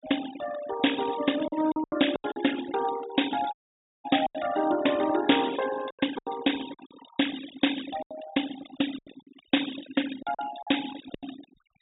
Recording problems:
treble missing; nothing above 4 kHz
noise reduction artefacts; signal-to-artefact ratio 12 dB
packet loss; 9% of the sound replaced, filled with silence
dropout; at 3.5 s for 0.5 s

